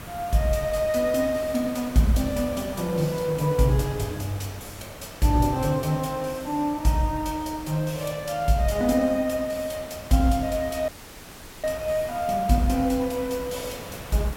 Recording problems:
background hiss; slope -4 dB per octave, SNR 15 dB
dropout; at 11 s for 1 s

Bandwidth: 16.5 kHz